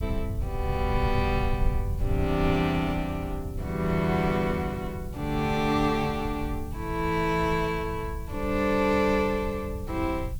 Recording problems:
background hiss; SNR 25 dB
rumble; below 98 Hz, SNR 7 dB

